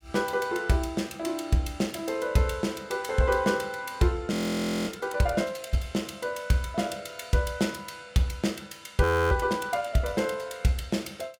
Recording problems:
audio freezing; at 4.5 s for 0.5 s and at 9 s

